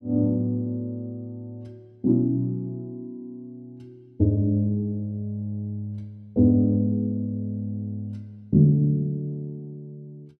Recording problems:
none

